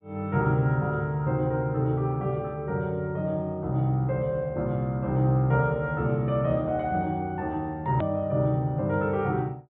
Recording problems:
low-pass filter; nothing above 4 kHz
click at an edit; at 8 s

